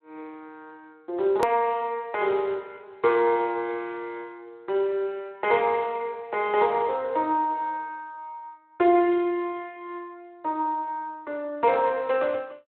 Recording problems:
telephone audio; 320 Hz to 3.5 kHz, Speex
hard cut with a click; at 1.5 s

